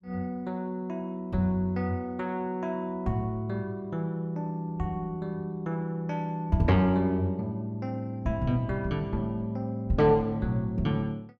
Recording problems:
none

